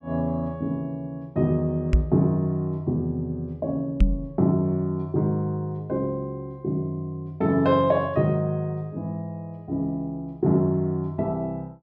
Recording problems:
knock on the microphone; at 2 s and at 4 s; peak +9 dB vs average level

